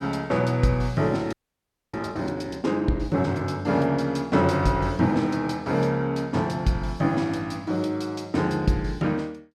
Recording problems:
audio freezing; at 1.5 s for 0.5 s

